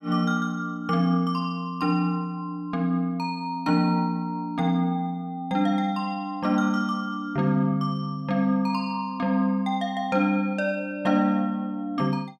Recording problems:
none

